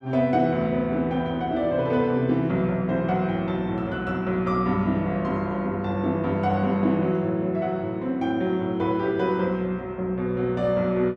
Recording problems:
none

